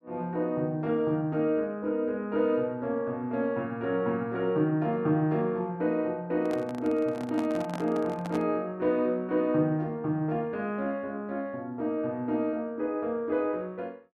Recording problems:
microphone handling noise; from 6.5 to 8.5 s; peak -4 dB vs average level

